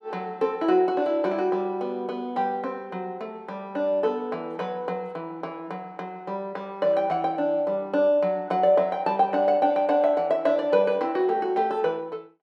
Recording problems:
none

